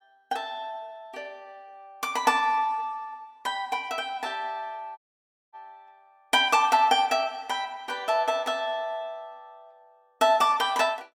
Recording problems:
dropout; at 5 s for 0.5 s

